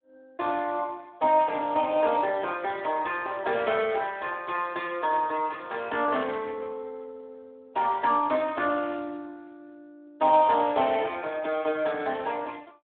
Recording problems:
telephone audio; 260 Hz to 3.5 kHz, Speex

